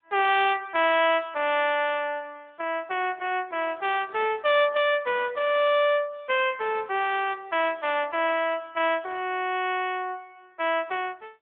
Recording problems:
phone line; 340 Hz to 3.5 kHz, AMR-NB

